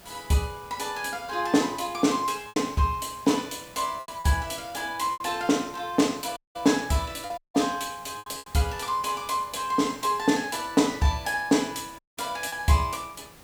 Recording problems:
background hiss; slope -3 dB per octave, SNR 22 dB
lost packets; 4% of the sound replaced, filled with repeated pitch periods
dropout; at 6.5 s, at 7.5 s and at 12 s

